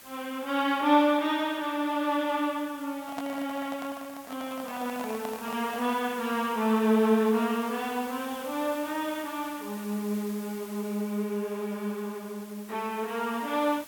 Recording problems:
hiss; slope -1 dB per octave, SNR 17 dB
handling noise; from 3 to 6 s; peak -4 dB vs average level

